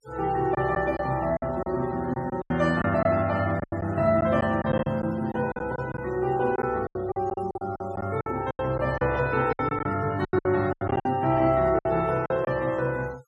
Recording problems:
denoising artefacts; signal-to-artefact ratio 21 dB
packet loss; 12% of the sound replaced, filled with silence

